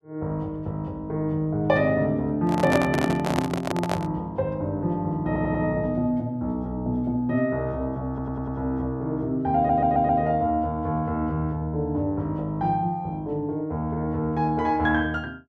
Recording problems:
microphone handling noise; from 2.5 to 4 s; peak +3 dB vs average level
stutter; at 5.5 s, at 8 s and at 9.5 s

